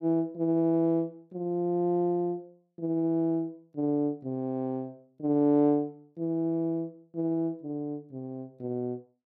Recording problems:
none

